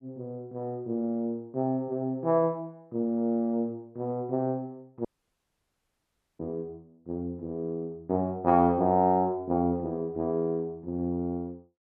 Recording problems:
dropout; at 5 s for 1.5 s

